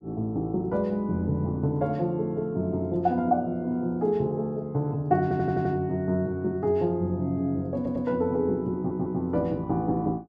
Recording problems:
audio stuttering; at 5 s, at 8 s and at 9 s

